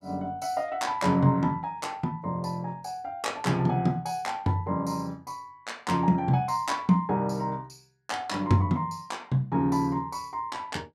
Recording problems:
none

